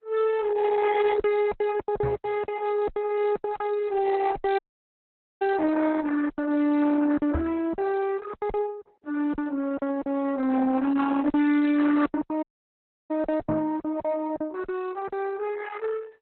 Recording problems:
codec artefacts; Opus, log-spectral distance 3 dB, nothing above 3.9 kHz
distortion; soft clipping, signal-to-distortion ratio 11 dB
packet loss; 11% of the sound replaced, filled with silence
knock on the microphone; at 2 s, at 7.5 s and at 13 s; peak -1 dB vs average level
dropout; at 4.5 s for 1 s and at 12 s for 0.5 s

